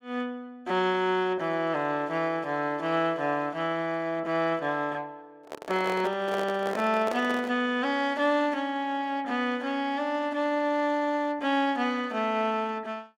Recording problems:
handling noise; from 5.5 to 7.5 s; peak -3 dB vs average level

